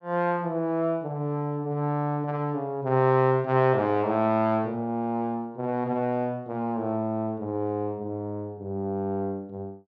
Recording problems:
none

